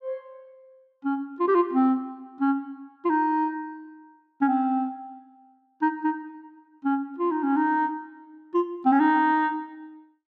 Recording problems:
none

